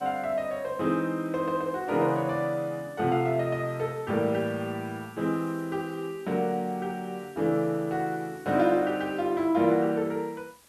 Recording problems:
background hiss; slope -1 dB per octave, SNR 27 dB

